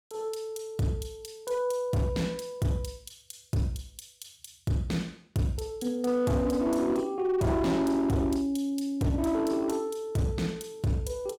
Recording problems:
distortion; hard clipping, uneven, signal-to-distortion ratio 8 dB

